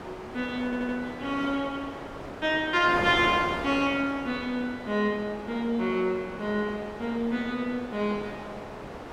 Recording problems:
wind noise; below 1.2 kHz, SNR 10 dB
stutter; at 0.5 s

